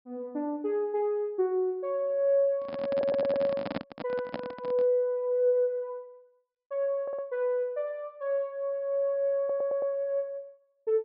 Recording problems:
low-pass filter; nothing above 5.5 kHz
microphone handling noise; from 2.5 to 5 s; peak 0 dB vs average level
stutter; at 3 s, at 7 s and at 9.5 s

